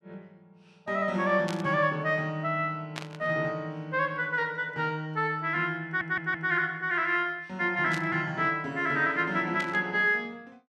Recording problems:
burst of static; 4 times, first at 1.5 s; peak -4 dB vs average level
audio stuttering; at 6 s

